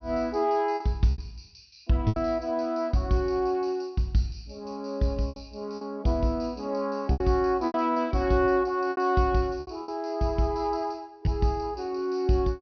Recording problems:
treble missing; nothing above 6.1 kHz
lost packets; 6% of the sound replaced, filled with repeated pitch periods

